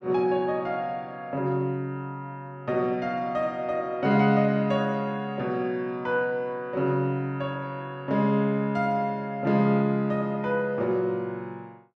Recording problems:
none

